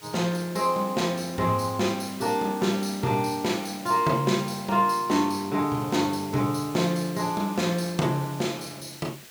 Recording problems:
hiss; slope +1 dB per octave, SNR 17 dB

